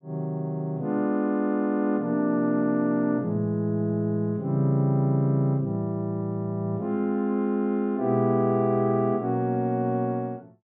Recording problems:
low-pass filter; nothing above 4 kHz

